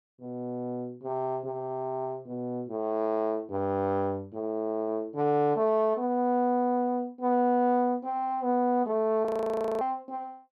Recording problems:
frozen audio; at 9.5 s for 0.5 s

